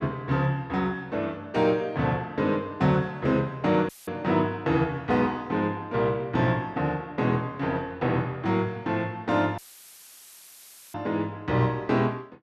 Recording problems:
audio cutting out; at 4 s and at 9.5 s for 1.5 s; filled with static

